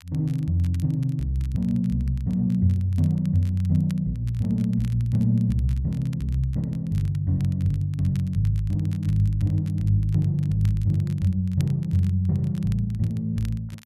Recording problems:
crackle; vinyl, SNR 28 dB

